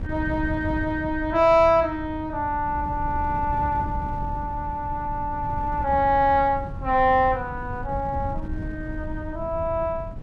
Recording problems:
wind noise; below 130 Hz, SNR 10 dB

